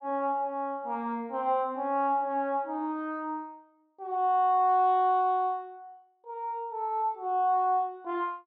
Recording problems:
none

